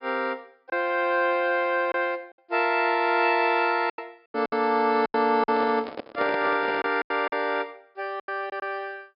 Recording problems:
treble missing; nothing above 5.5 kHz
lost packets; 7% of the sound replaced, filled with silence
microphone handling noise; from 5.5 to 7 s; peak -5 dB vs average level

